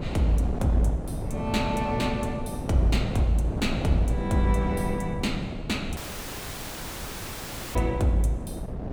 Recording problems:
wind on the microphone; below 290 Hz, SNR 5 dB
audio cutting out; at 6 s for 2 s

